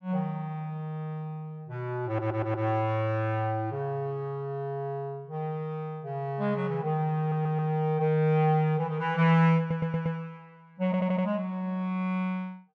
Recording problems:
audio stuttering; 4 times, first at 2 s

